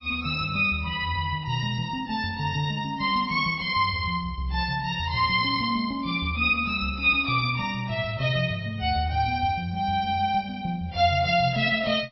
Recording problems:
lossy compression; AAC, then MP3, log-spectral distance 3 dB, nothing above 5.5 kHz

